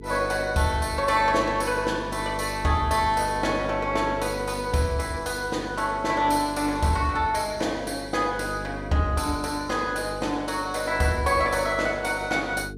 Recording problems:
electrical hum; 50 Hz, harmonics up to 450 Hz, SNR 13 dB

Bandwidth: 15.5 kHz